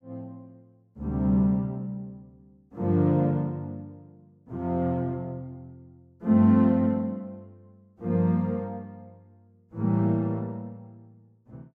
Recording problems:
none

